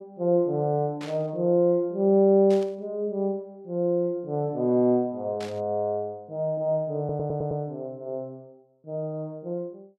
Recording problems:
static burst; at 1 s, at 2.5 s and at 5.5 s; peak -11 dB vs average level
audio stuttering; at 7 s

